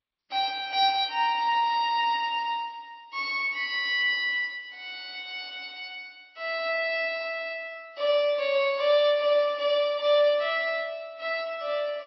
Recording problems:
lossy compression; G.722, then MP3, log-spectral distance 3 dB, nothing above 5.5 kHz

